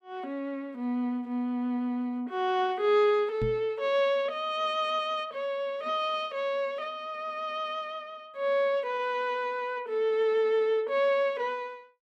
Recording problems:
microphone thump; at 3.5 s; peak -1 dB vs average level

